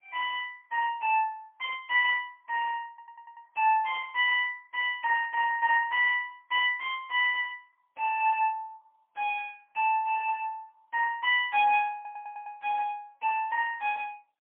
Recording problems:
phone line; 540 Hz to 3.1 kHz, AMR-NB, then MP3
stutter; at 3 s and at 12 s

